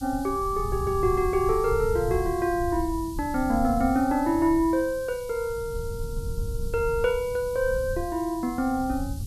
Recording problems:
background hiss; SNR 20 dB
rumble; below 98 Hz, SNR 11 dB

